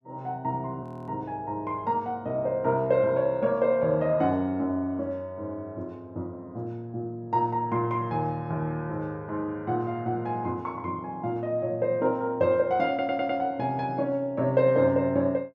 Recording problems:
frozen audio; at 1 s
stutter; at 13 s

